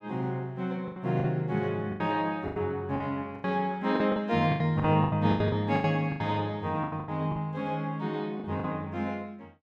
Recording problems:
packet loss; 13% of the sound replaced, filled with the last packet

